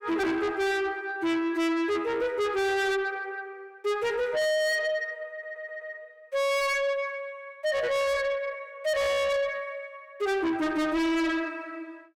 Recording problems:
distorted audio; soft clipping, signal-to-distortion ratio 6 dB
stutter; at 5.5 s

